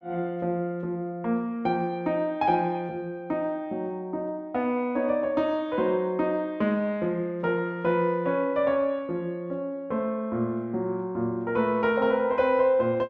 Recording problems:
none

